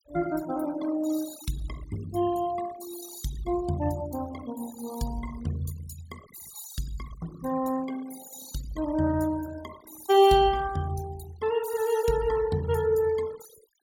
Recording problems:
denoising artefacts; signal-to-artefact ratio 16 dB

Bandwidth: 17.5 kHz